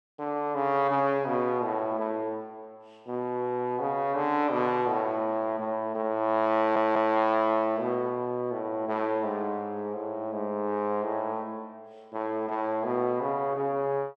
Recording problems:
audio stuttering; at 6.5 s

